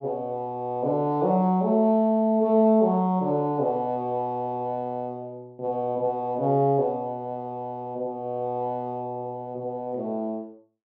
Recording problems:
none

